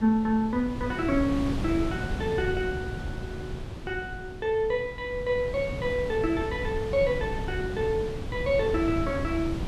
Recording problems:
wind on the microphone; below 250 Hz, SNR 7 dB

